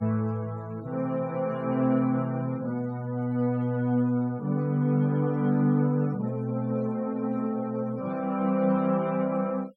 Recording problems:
noise reduction artefacts; signal-to-artefact ratio 26 dB

